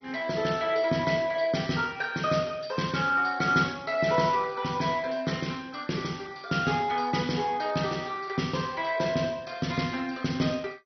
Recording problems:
lossy codec; MP2, log-spectral distance 4 dB, nothing above 6 kHz

